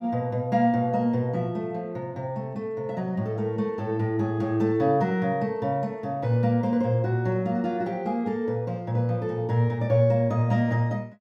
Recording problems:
none

